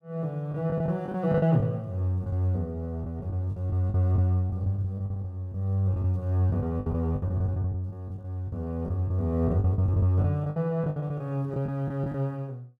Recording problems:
lost packets; 13% of the sound replaced, filled with the last packet

